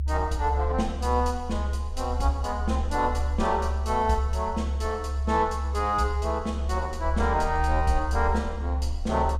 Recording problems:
rumble; below 72 Hz, strongest tone 70 Hz, SNR 3 dB

